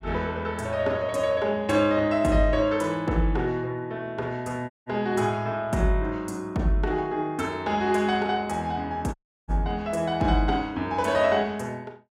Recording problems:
audio cutting out; at 4.5 s and at 9 s

